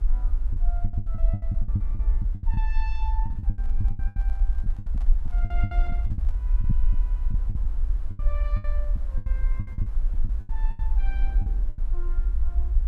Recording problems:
mains hum; 60 Hz, harmonics up to 360 Hz, SNR 13 dB
background hiss; SNR 11 dB
low-frequency rumble; below 48 Hz, SNR -17 dB
packet loss; 17% of the sound replaced, filled with the last packet
microphone handling noise; from 3.5 to 6.5 s; peak -1 dB vs average level

